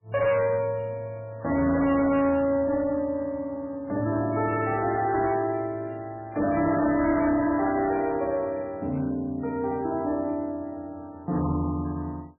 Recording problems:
lossy codec; MP3, log-spectral distance 2 dB, nothing above 2.7 kHz
distorted audio; hard clipping, signal-to-distortion ratio 11 dB

